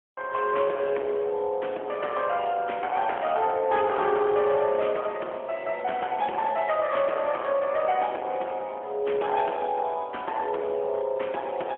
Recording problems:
phone line; 300 Hz to 3.3 kHz, AMR-NB, then MP3
distortion; hard clipping, signal-to-distortion ratio 13 dB

